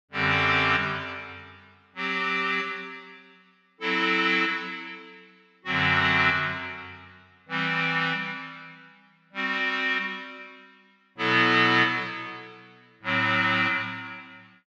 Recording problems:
none

